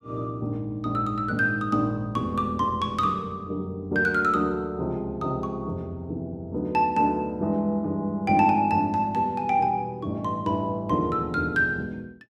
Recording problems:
none

